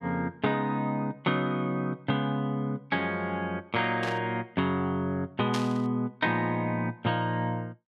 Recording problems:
burst of static; at 4 s and at 5.5 s; peak -2 dB vs average level

